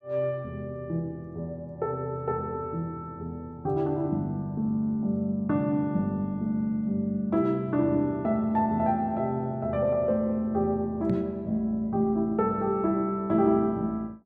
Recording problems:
knock on the microphone; at 11 s; peak +2 dB vs average level

